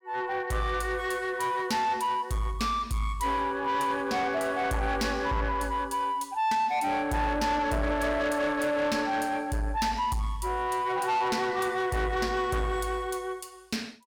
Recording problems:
distorted audio; soft clipping, signal-to-distortion ratio 10 dB

